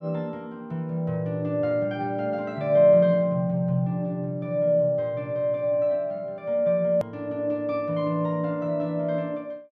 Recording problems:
click at an edit; at 7 s

